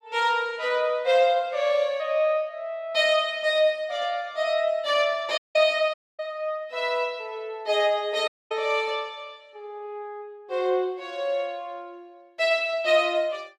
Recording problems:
dropout; at 5.5 s, at 6 s and at 8.5 s

